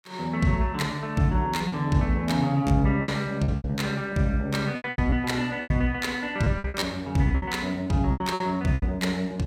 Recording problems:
lost packets; 11% of the sound replaced, filled with repeated pitch periods

